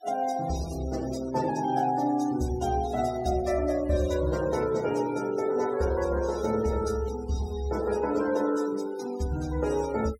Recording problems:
noise reduction artefacts; signal-to-artefact ratio 17 dB

